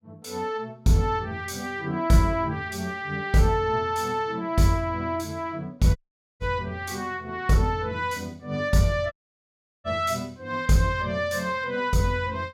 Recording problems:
dropout; at 6 s and at 9 s for 0.5 s

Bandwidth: 16.5 kHz